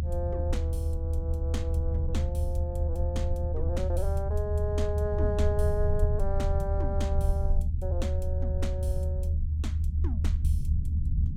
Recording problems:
low-frequency rumble; below 78 Hz, SNR -6 dB

